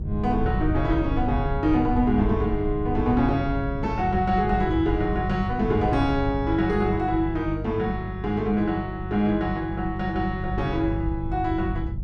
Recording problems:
hum; 50 Hz, harmonics up to 400 Hz, SNR 8 dB
wind on the microphone; below 90 Hz, SNR 9 dB

